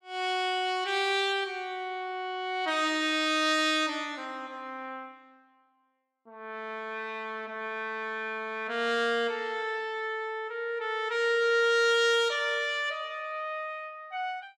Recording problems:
none

